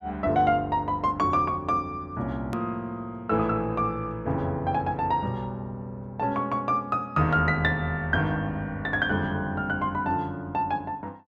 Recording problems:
hard cut with a click; at 2.5 s

